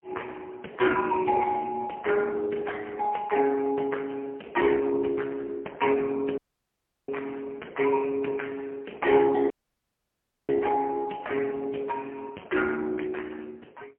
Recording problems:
phone line; 240 Hz to 2.6 kHz, AMR-NB, then MP3
audio cutting out; at 6.5 s for 0.5 s and at 9.5 s for 1 s

